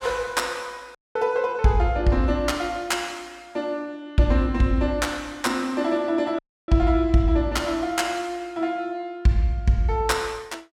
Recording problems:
dropout; at 1 s and at 6.5 s

